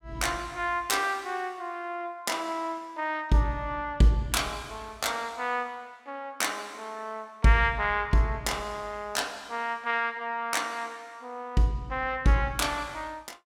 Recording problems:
none

